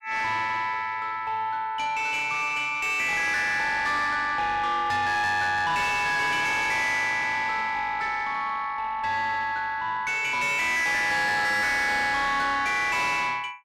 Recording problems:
distortion; soft clipping, signal-to-distortion ratio 6 dB

